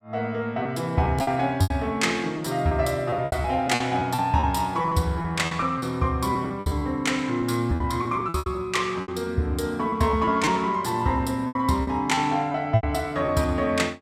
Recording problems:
lost packets; 11% of the sound replaced, filled with repeated pitch periods

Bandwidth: 16 kHz